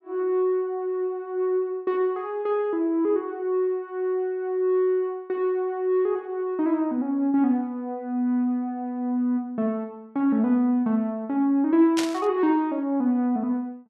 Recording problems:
burst of static; at 12 s; peak 0 dB vs average level

